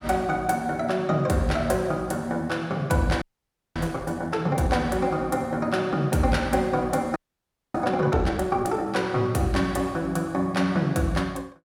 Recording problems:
audio freezing; at 3 s for 0.5 s and at 7 s for 0.5 s

